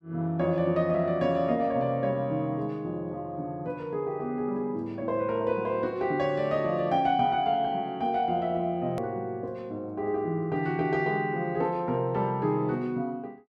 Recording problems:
hard cut with a click; at 9 s

